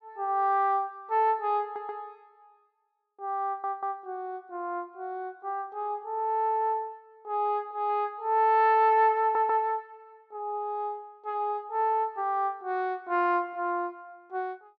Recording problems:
audio stuttering; at 1.5 s, at 3.5 s and at 9 s

